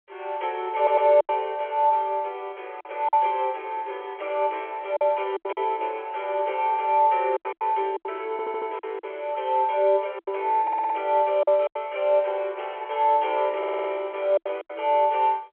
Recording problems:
telephone audio; 280 Hz to 3.3 kHz, G.711
packet loss; 7% of the sound replaced, filled with silence
stutter; 4 times, first at 1 s

